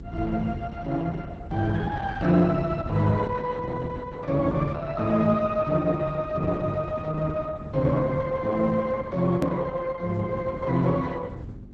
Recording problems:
codec artefacts; Opus, log-spectral distance 3 dB, nothing above 13.1 kHz
electrical hum; 50 Hz, harmonics up to 400 Hz, SNR 22 dB
rumble; below 140 Hz, SNR 11 dB
hard cut with a click; at 9.5 s

